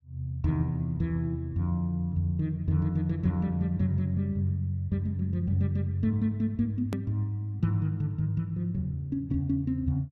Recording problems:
hard cut with a click; at 7 s

